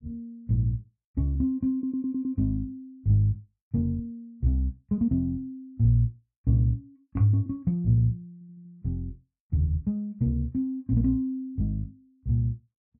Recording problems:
stutter; at 1.5 s and at 8.5 s

